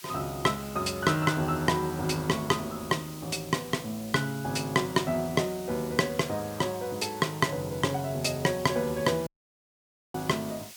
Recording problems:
background hiss; SNR 16 dB
audio cutting out; at 9.5 s for 1 s

